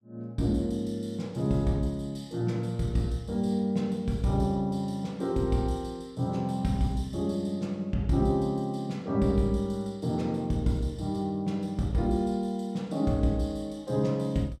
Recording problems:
none

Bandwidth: 14.5 kHz